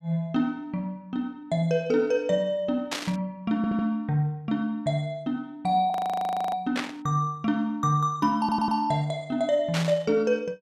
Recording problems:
burst of static; at 3 s, at 7 s and at 9.5 s; peak 0 dB vs average level
stutter; at 3.5 s and at 8.5 s
audio freezing; at 6 s for 0.5 s

